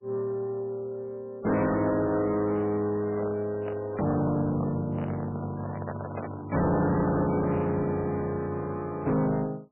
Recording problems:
codec artefacts; MP3, log-spectral distance 3 dB
distorted audio; soft clipping, signal-to-distortion ratio 6 dB
handling noise; from 3 to 7 s; peak -4 dB vs average level

